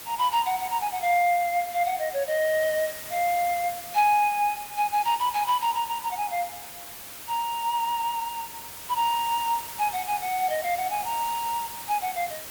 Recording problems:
hiss; slope -1 dB per octave, SNR 11 dB

